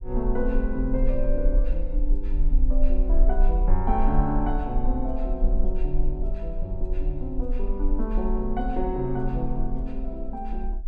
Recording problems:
low-frequency rumble; below 38 Hz, strongest tone 22 Hz, SNR -2 dB

